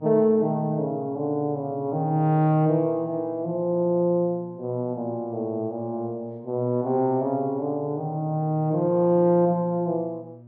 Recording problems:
electrical hum; 60 Hz, harmonics up to 600 Hz, SNR 21 dB

